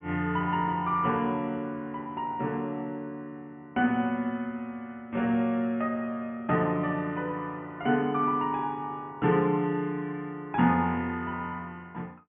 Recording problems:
treble missing; nothing above 3.2 kHz

